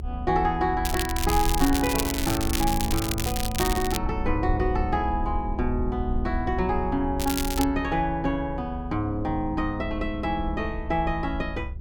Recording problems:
rumble; below 68 Hz, SNR 6 dB
crackling; from 1 to 4 s and at 7 s; loose cable, SNR 4 dB

